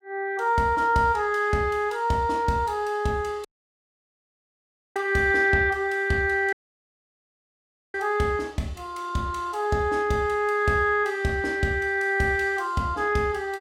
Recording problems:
audio cutting out; at 3.5 s for 1.5 s and at 6.5 s for 1.5 s

